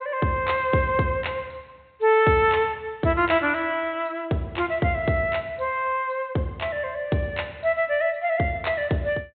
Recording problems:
treble cut off; nothing above 4 kHz

